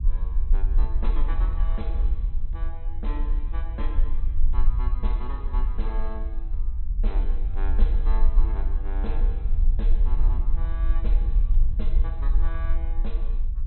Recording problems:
treble cut off; nothing above 4.1 kHz
rumble; below 42 Hz, strongest tone 22 Hz, SNR -13 dB

